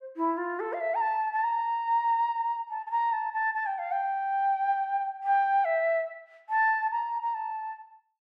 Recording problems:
none

